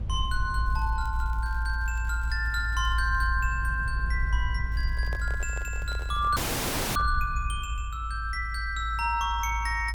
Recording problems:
low-frequency rumble; below 58 Hz, strongest tone 56 Hz, SNR 1 dB
crackle; from 0.5 to 3.5 s and from 4.5 to 6.5 s; loose cable, SNR 28 dB
handling noise; from 5 to 7 s; peak -7 dB vs average level
frozen audio; at 6.5 s for 0.5 s

